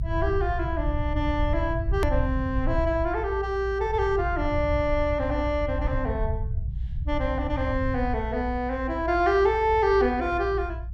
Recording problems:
low-frequency rumble; below 92 Hz, SNR 5 dB
hard cut with a click; at 2 s

